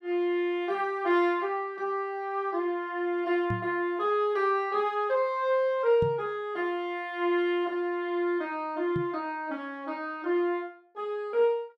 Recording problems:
microphone thump; at 3.5 s, at 6 s and at 9 s; peak 0 dB vs average level

